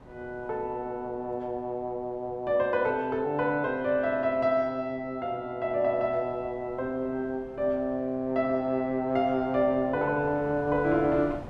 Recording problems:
wind on the microphone; below 650 Hz, SNR 22 dB

